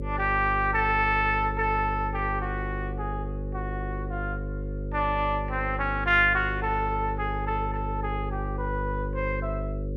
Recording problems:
hum; 50 Hz, harmonics up to 550 Hz, SNR 6 dB

